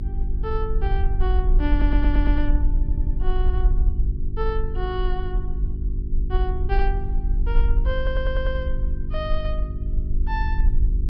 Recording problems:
treble cut off; nothing above 5.5 kHz
hum; 50 Hz, harmonics up to 400 Hz, SNR 3 dB
rumble; below 50 Hz, SNR -6 dB
stutter; at 1.5 s, at 3 s and at 8 s

